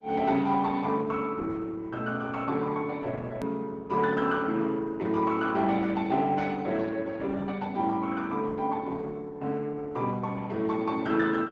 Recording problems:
lossy compression; Opus, log-spectral distance 3 dB, nothing above 13.1 kHz
click at an edit; at 3.5 s

